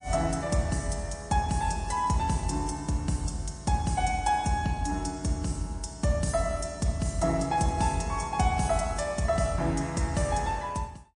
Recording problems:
codec artefacts; MP3, log-spectral distance 4 dB, nothing above 9.5 kHz

